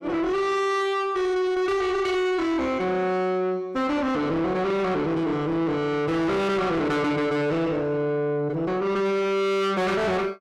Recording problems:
distorted audio; soft clipping, signal-to-distortion ratio 6 dB

